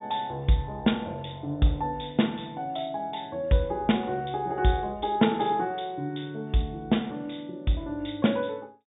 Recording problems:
treble missing; nothing above 3.7 kHz

